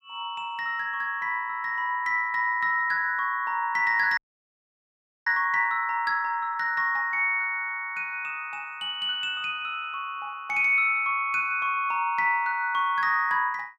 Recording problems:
frozen audio; at 4 s for 1 s

